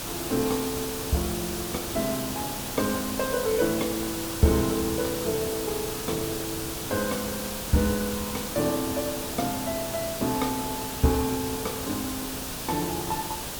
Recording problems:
hiss; SNR 3 dB

